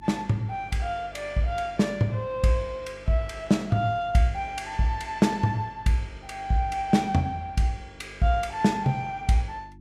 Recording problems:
hum; 50 Hz, harmonics up to 350 Hz, SNR 23 dB

